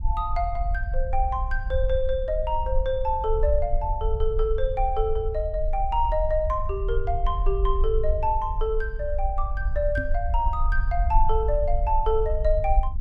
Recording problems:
rumble; below 52 Hz, strongest tone 20 Hz, SNR 2 dB
microphone bump; at 10 s; peak -1 dB vs average level

